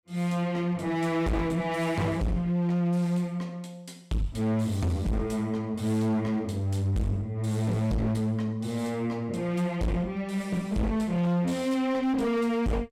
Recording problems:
distortion; hard clipping, uneven, signal-to-distortion ratio 5 dB

